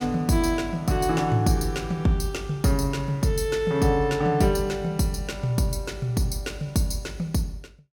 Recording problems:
none

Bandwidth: 17 kHz